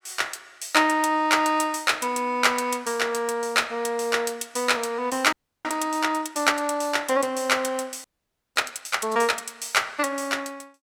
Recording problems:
frozen audio; at 5.5 s and at 8 s for 0.5 s

